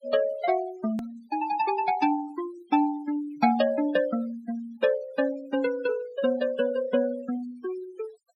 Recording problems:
denoising artefacts; signal-to-artefact ratio 17 dB
click at an edit; at 1 s

